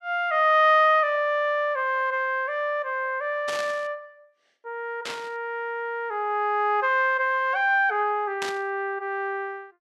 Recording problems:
static burst; at 3.5 s, at 5 s and at 8.5 s; peak -4 dB vs average level

